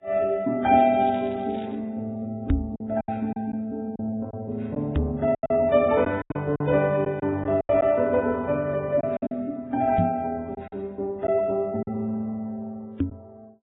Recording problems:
lossy compression; Vorbis, then AAC, log-spectral distance 2 dB, nothing above 3.2 kHz
packet loss; 6% of the sound replaced, filled with silence
crackle; from 0.5 to 2 s; loose cable, SNR 27 dB
microphone bump; 4 times, first at 2.5 s; peak +6 dB vs average level

